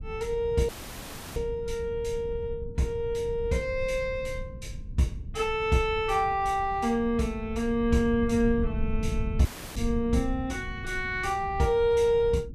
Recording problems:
rumble; below 100 Hz, SNR 10 dB
audio cutting out; at 0.5 s for 0.5 s and at 9.5 s

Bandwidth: 14.5 kHz